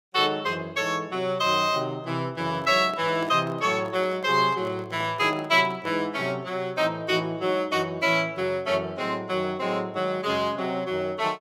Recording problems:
microphone handling noise; from 2.5 to 6 s; peak -9 dB vs average level

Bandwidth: 16 kHz